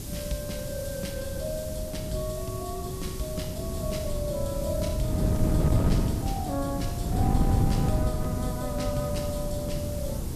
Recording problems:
hiss; slope +4 dB per octave, SNR 8 dB
wind on the microphone; below 200 Hz, SNR -4 dB

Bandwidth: 14 kHz